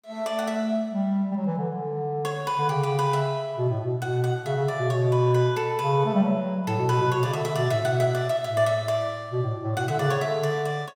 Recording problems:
none

